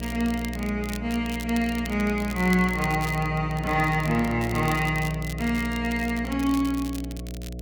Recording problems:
electrical hum; 60 Hz, harmonics up to 720 Hz, SNR 9 dB
crackle; vinyl, SNR 16 dB

